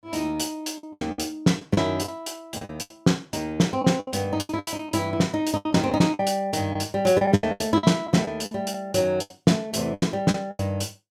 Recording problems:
packet loss; 15% of the sound replaced, filled with the last packet

